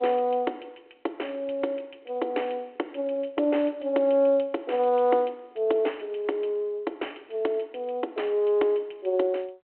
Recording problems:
telephone audio; 280 Hz to 3.1 kHz, G.726

